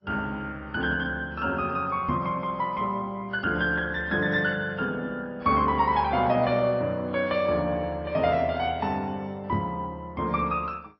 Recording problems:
lossy compression; MP2, then AAC, log-spectral distance 2 dB, nothing above 4.8 kHz
microphone thump; at 2 s and at 9.5 s; peak 0 dB vs average level

